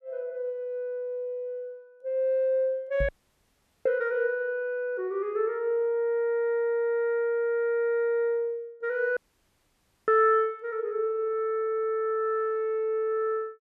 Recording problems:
knock on the microphone; at 3 s; peak -1 dB vs average level
audio cutting out; at 3 s for 1 s and at 9 s for 1 s

